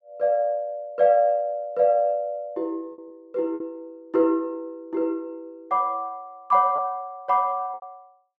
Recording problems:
packet loss; 3% of the sound replaced, filled with repeated pitch periods

